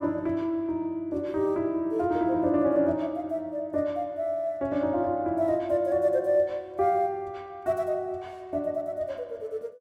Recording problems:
none

